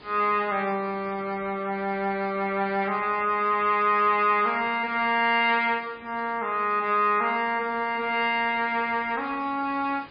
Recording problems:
lossy compression; MP3, log-spectral distance 4 dB, nothing above 4.4 kHz
hiss; SNR 24 dB

